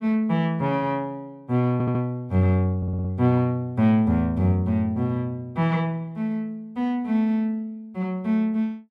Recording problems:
stutter; at 1.5 s and at 3 s

